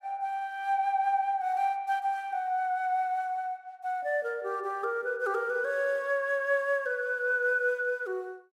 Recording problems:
none

